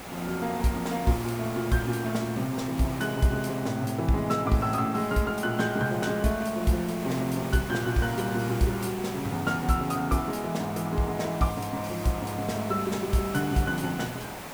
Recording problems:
hiss; SNR 11 dB

